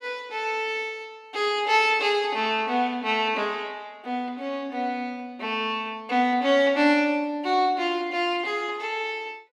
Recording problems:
none

